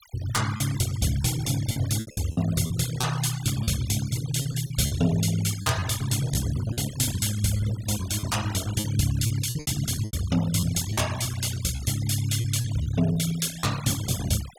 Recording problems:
noise reduction artefacts; signal-to-artefact ratio 13 dB
lost packets; 9% of the sound replaced, filled with repeated pitch periods

